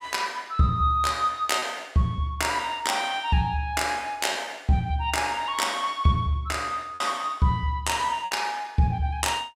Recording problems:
packet loss; 2% of the sound replaced, filled with repeated pitch periods

